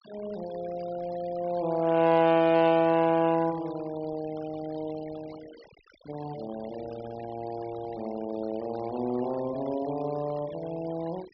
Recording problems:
treble missing; nothing above 5.5 kHz
noise reduction artefacts; signal-to-artefact ratio 20 dB

